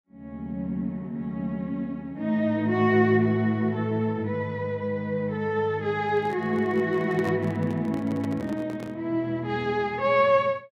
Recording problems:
microphone handling noise; from 6 to 9 s; peak -5 dB vs average level

